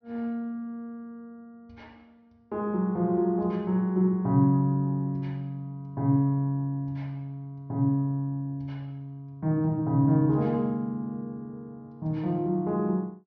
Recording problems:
treble cut off; nothing above 6.4 kHz

